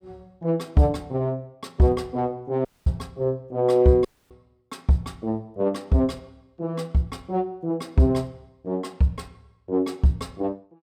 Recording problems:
audio cutting out; at 2.5 s and at 4 s

